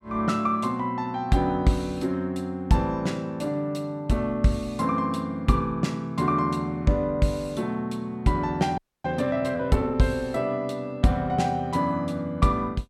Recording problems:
audio freezing; at 9 s

